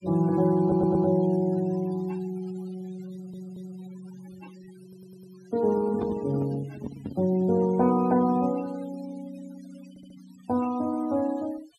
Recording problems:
denoising artefacts; signal-to-artefact ratio 22 dB
stutter; 4 times, first at 0.5 s
handling noise; from 5.5 to 8 s; peak -3 dB vs average level

